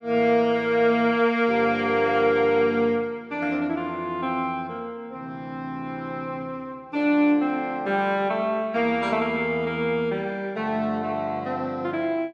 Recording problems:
none

